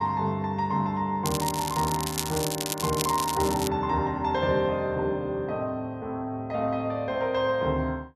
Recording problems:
crackle; from 1.5 to 3.5 s; loose cable, SNR 5 dB

